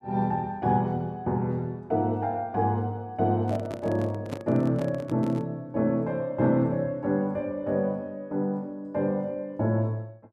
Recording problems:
handling noise; from 3.5 to 5.5 s; peak -2 dB vs average level

